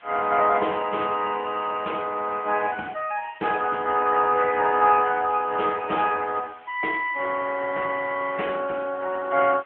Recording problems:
telephone audio; 320 Hz to 3.2 kHz, AMR-NB
hiss; SNR 27 dB

